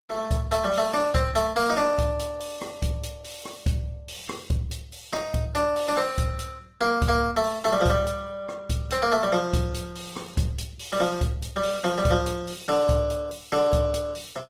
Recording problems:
lossy codec; Opus, log-spectral distance 4 dB

